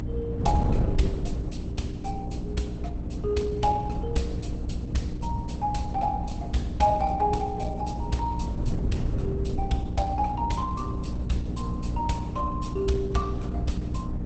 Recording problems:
lossy codec; Opus, log-spectral distance 3 dB, nothing above 8 kHz
mains hum; 60 Hz, harmonics up to 300 Hz, SNR 5 dB
wind on the microphone; below 170 Hz, SNR 3 dB

